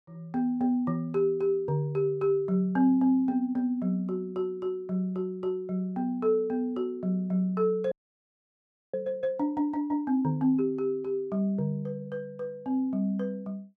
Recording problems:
audio freezing; at 8 s for 1 s

